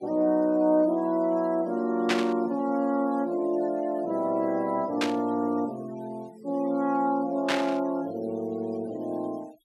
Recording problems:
denoising artefacts; signal-to-artefact ratio 26 dB
static burst; at 2 s, at 5 s and at 7.5 s; peak +4 dB vs average level

